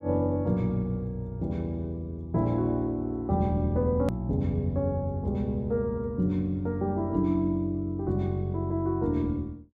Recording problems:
click at an edit; at 4 s

